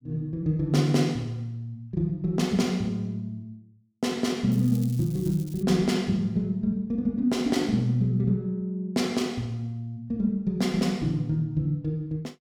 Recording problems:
crackle; from 4.5 to 5.5 s; loose cable, SNR 20 dB

